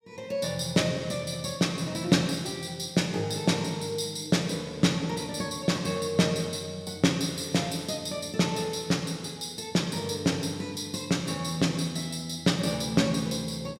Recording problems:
none

